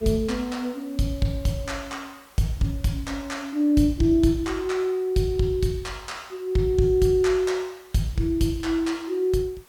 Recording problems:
hiss; slope -2 dB per octave, SNR 28 dB

